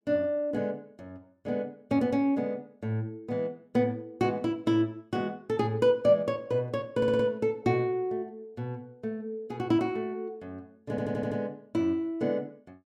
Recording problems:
stutter; at 7 s and at 11 s

